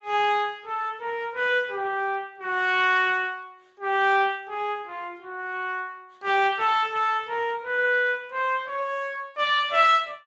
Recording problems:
lossy compression; Speex, log-spectral distance 3 dB

